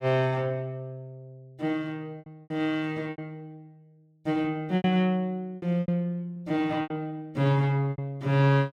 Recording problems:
lost packets; 8% of the sound replaced, filled with repeated pitch periods

